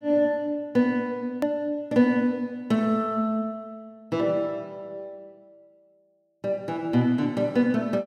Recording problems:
click at an edit; at 1.5 s

